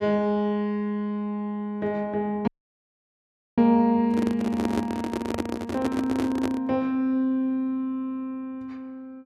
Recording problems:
audio cutting out; at 2.5 s for 1 s
microphone handling noise; from 4 to 6.5 s; peak +2 dB vs average level

